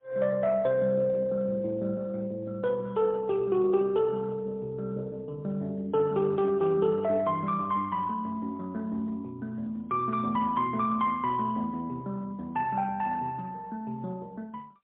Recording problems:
phone line; 190 Hz to 3.5 kHz, AMR-NB, then MP3

